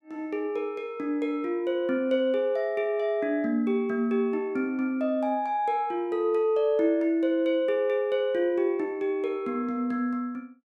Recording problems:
none

